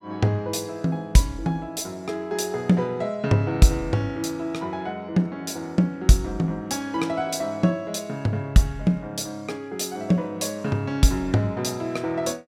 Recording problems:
none

